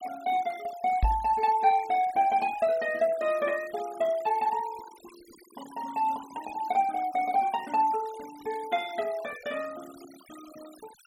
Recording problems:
noise reduction artefacts; signal-to-artefact ratio 20 dB
knock on the microphone; at 1 s; peak +5 dB vs average level

